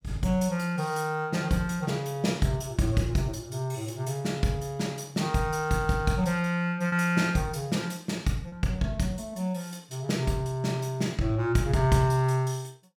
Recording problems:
lost packets; 0.6% of the sound replaced, filled with repeated pitch periods

